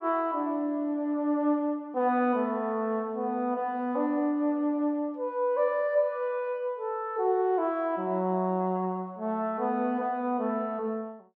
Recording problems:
none

